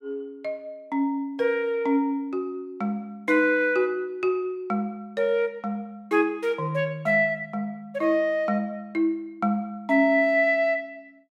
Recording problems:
none

